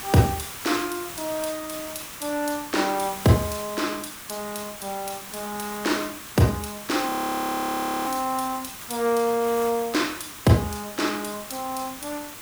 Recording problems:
background hiss; SNR 10 dB
audio freezing; at 7 s for 1 s

